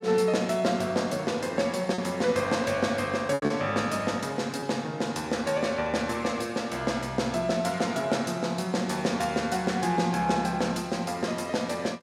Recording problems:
packet loss; 1.5% of the sound replaced, filled with repeated pitch periods

